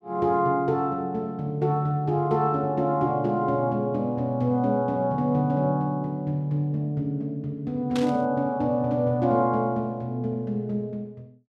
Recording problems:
static burst; at 8 s; peak -5 dB vs average level

